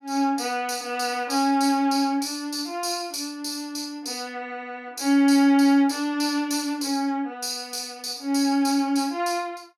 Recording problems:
none

